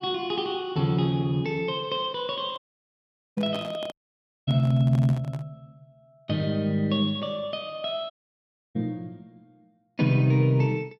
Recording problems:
handling noise; from 2.5 to 5.5 s; peak -7 dB vs average level
dropout; at 2.5 s for 1 s, at 4 s for 0.5 s and at 8 s for 0.5 s

